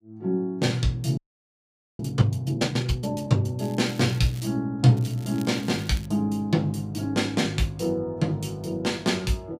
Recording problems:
audio freezing; at 1 s for 1 s
crackle; at 3.5 s and from 5 to 6 s; loose cable, SNR 22 dB

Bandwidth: 15.5 kHz